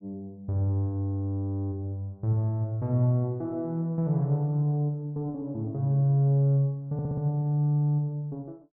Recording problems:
audio stuttering; at 7 s

